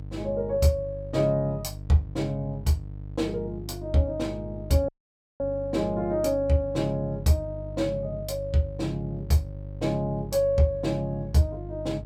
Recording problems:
hum; 50 Hz, harmonics up to 500 Hz, SNR 11 dB
dropout; at 5 s for 0.5 s

